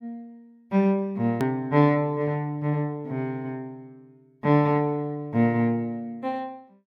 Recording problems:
hard cut with a click; at 1.5 s

